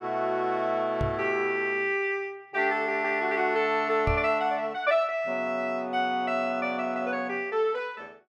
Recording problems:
microphone bump; at 1 s and at 4 s; peak +1 dB vs average level

